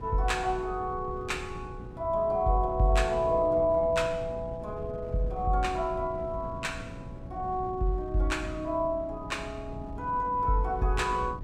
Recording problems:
hum; 60 Hz, harmonics up to 720 Hz, SNR 19 dB
wind noise; below 190 Hz, SNR 14 dB

